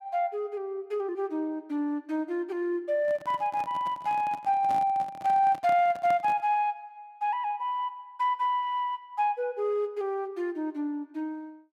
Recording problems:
handling noise; from 3 to 6.5 s; peak -8 dB vs average level

